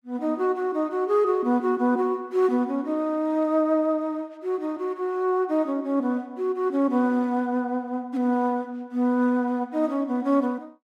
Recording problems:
none

